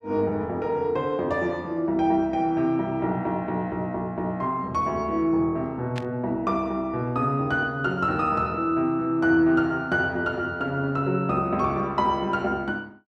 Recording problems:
static burst; at 6 s; peak -6 dB vs average level

